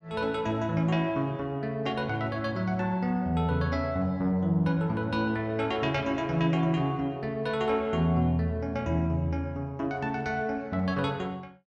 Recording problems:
none

